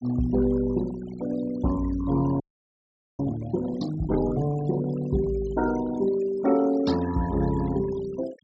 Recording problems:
treble missing; nothing above 8 kHz
denoising artefacts; signal-to-artefact ratio 17 dB
audio freezing; at 2.5 s for 1 s

